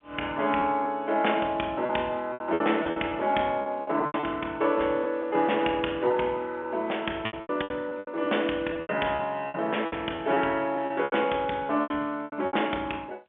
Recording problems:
phone line; 280 Hz to 3.5 kHz, G.711
packet loss; 12% of the sound replaced, filled with repeated pitch periods

